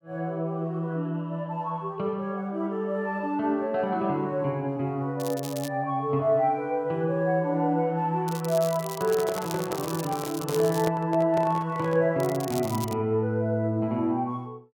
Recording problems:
crackle; at 5 s, from 8 to 11 s and at 12 s; loose cable, SNR 13 dB
handling noise; from 9 to 12 s; peak -1 dB vs average level

